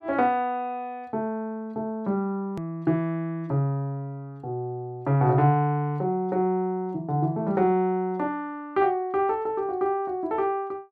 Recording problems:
click at an edit; at 2.5 s

